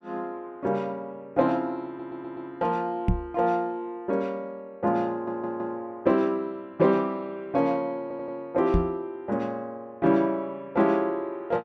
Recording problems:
audio stuttering; at 2 s, at 5 s and at 8 s
microphone thump; at 3 s and at 8.5 s; peak +7 dB vs average level

